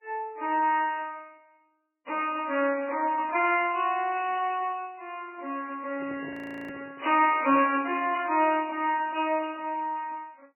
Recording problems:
lossy compression; MP3, log-spectral distance 5 dB, nothing above 2.6 kHz
microphone handling noise; from 6 to 8.5 s; peak -11 dB vs average level
frozen audio; at 6.5 s

